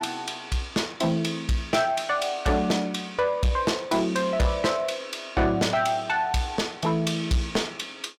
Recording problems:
distorted audio; soft clipping, signal-to-distortion ratio 10 dB

